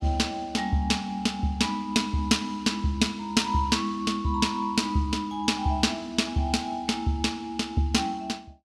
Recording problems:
none

